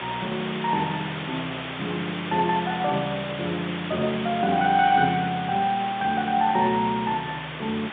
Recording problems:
phone line; 240 Hz to 3.7 kHz, G.711
background hiss; SNR 8 dB

